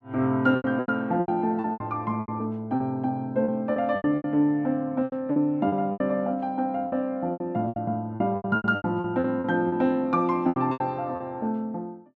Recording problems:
lost packets; 15% of the sound replaced, filled with repeated pitch periods

